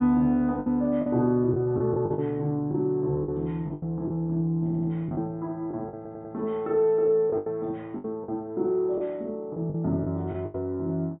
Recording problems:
low-pass filter; nothing above 4 kHz
lost packets; 9% of the sound replaced, filled with the last packet
stutter; at 4.5 s and at 6 s

